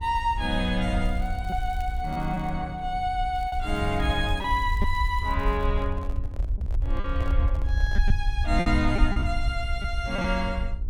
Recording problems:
hum; 60 Hz, harmonics up to 1 kHz, SNR 20 dB
rumble; below 68 Hz, SNR 2 dB
lost packets; 4% of the sound replaced, filled with repeated pitch periods
crackle; from 1 to 2.5 s and from 3.5 to 5.5 s; loose cable, SNR 27 dB
handling noise; from 5.5 to 8 s; peak -10 dB vs average level

